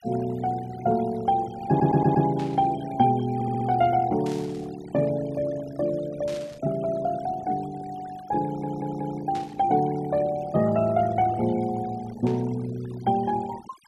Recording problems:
noise reduction artefacts; signal-to-artefact ratio 19 dB
audio stuttering; at 1.5 s, at 3.5 s and at 8.5 s
static burst; 5 times, first at 2.5 s; peak -13 dB vs average level

